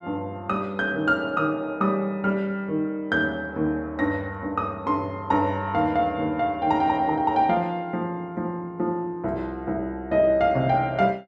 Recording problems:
none

